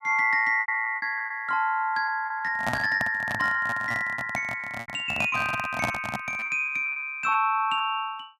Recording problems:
lost packets; 12% of the sound replaced, filled with repeated pitch periods
handling noise; from 2.5 to 6.5 s; peak +2 dB vs average level

